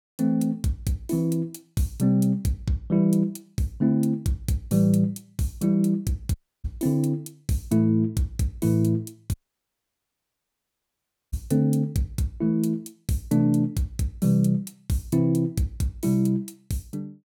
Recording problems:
dropout; at 6.5 s and at 9.5 s for 2 s

